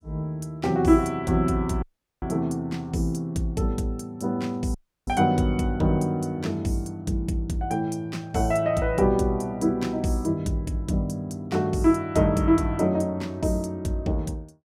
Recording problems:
dropout; at 2 s and at 4.5 s

